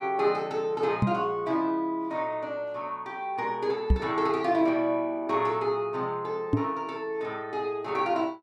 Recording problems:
microphone thump; at 1 s, at 4 s and at 6.5 s; peak +9 dB vs average level

